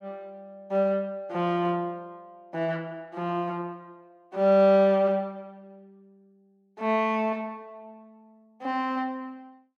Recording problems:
none

